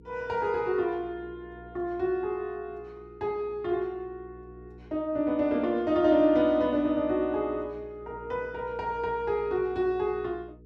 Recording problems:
hum; 60 Hz, harmonics up to 480 Hz, SNR 22 dB

